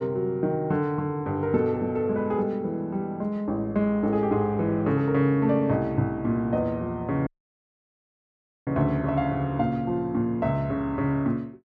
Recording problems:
dropout; at 7.5 s for 1.5 s

